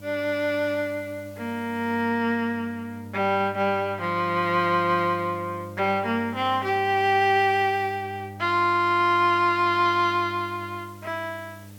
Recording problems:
hum; 50 Hz, harmonics up to 900 Hz, SNR 18 dB
hiss; SNR 30 dB

